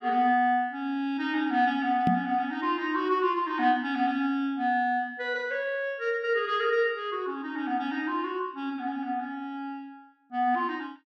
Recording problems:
microphone thump; at 2 s; peak +5 dB vs average level

